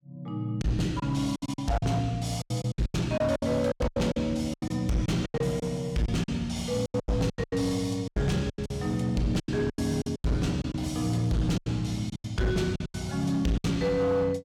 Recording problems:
distortion; hard clipping, signal-to-distortion ratio 10 dB
lost packets; 15% of the sound replaced, filled with silence

